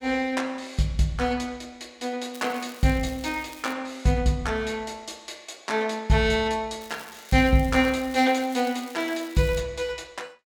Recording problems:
crackling; from 2.5 to 3.5 s and from 7 to 9.5 s; loose cable, SNR 20 dB

